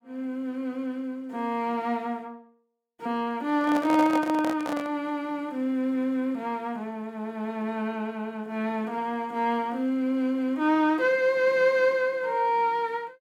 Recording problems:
microphone handling noise; from 3.5 to 5 s; peak -1 dB vs average level

